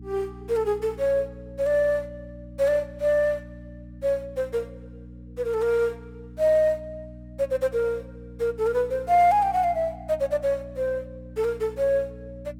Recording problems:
electrical hum; 60 Hz, harmonics up to 300 Hz, SNR 18 dB

